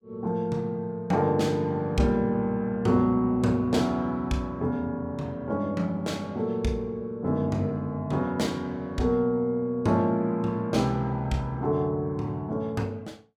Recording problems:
none

